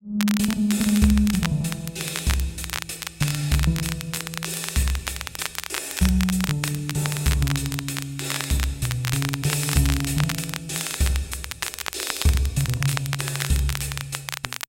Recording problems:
crackling; vinyl, SNR 6 dB

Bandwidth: 16 kHz